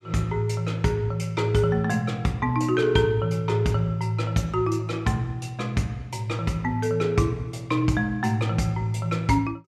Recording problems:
none

